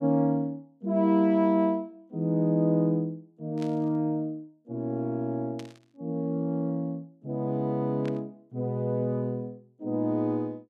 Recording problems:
burst of static; at 3.5 s, at 5.5 s and at 8 s; peak -13 dB vs average level

